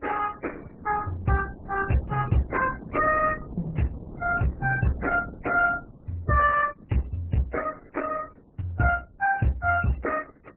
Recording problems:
lossy codec; MP3, then Opus, log-spectral distance 4 dB
wind on the microphone; below 320 Hz, SNR 17 dB

